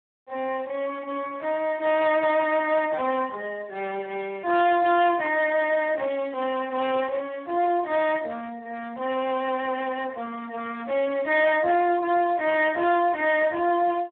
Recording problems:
phone line; 300 Hz to 3.7 kHz, Speex
distortion; hard clipping, signal-to-distortion ratio 12 dB

